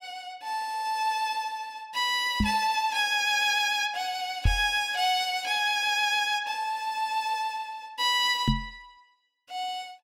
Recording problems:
microphone thump; at 2.5 s, at 4.5 s and at 8.5 s; peak +5 dB vs average level

